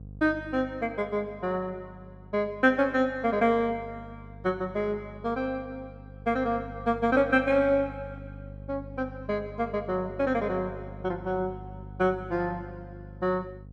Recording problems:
electrical hum; 50 Hz, harmonics up to 550 Hz, SNR 17 dB

